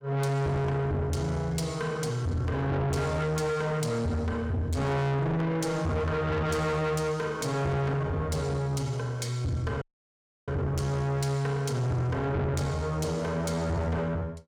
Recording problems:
distorted audio; soft clipping, signal-to-distortion ratio 6 dB
audio cutting out; at 10 s for 0.5 s

